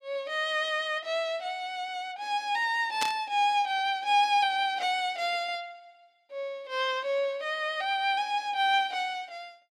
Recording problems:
burst of static; at 3 s; peak +2 dB vs average level

